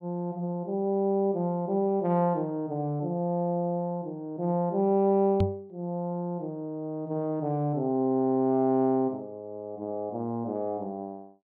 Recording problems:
knock on the microphone; at 5.5 s; peak +5 dB vs average level

